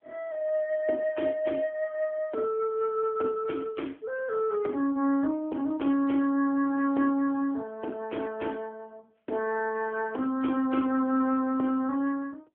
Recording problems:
telephone audio; 220 Hz to 3 kHz, AMR-NB

